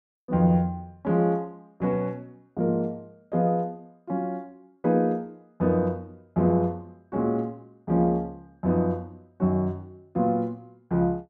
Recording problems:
none

